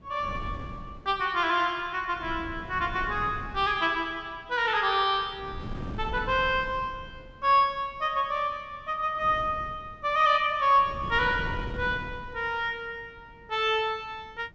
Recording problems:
low-pass filter; nothing above 8 kHz
wind noise; below 210 Hz, SNR 14 dB

